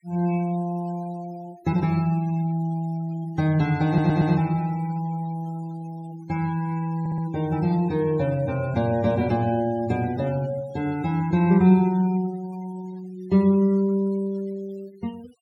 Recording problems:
noise reduction artefacts; signal-to-artefact ratio 24 dB
stutter; at 4 s and at 7 s

